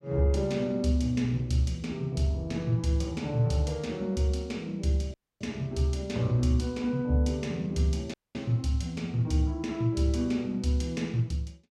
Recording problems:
dropout; at 5 s and at 8 s

